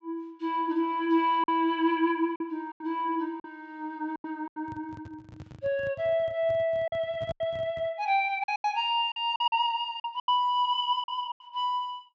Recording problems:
treble cut off; nothing above 8 kHz
lost packets; 8% of the sound replaced, filled with silence
handling noise; from 4.5 to 8 s; peak -8 dB vs average level

